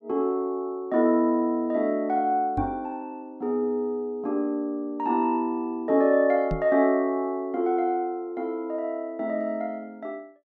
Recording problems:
microphone bump; at 2.5 s and at 6.5 s; peak -1 dB vs average level

